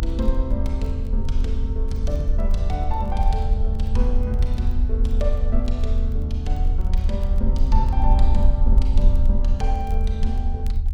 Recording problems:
low-frequency rumble; below 60 Hz, strongest tone 30 Hz, SNR -7 dB
crackle; vinyl, SNR 28 dB

